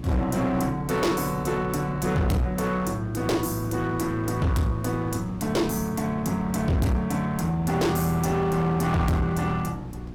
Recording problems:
distortion; hard clipping, uneven, signal-to-distortion ratio 6 dB
mains hum; 60 Hz, harmonics up to 360 Hz, SNR 16 dB
wind noise; below 300 Hz, SNR 18 dB

